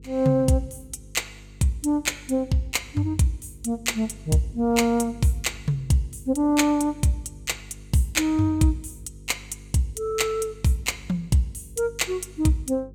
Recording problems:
hum; 50 Hz, harmonics up to 500 Hz, SNR 21 dB

